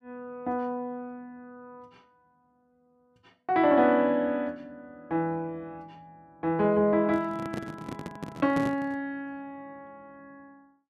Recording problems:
handling noise; from 7 to 9 s; peak -2 dB vs average level

